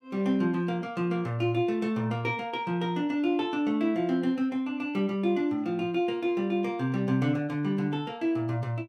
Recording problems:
none

